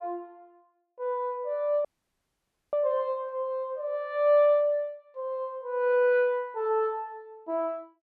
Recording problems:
dropout; at 2 s for 1 s

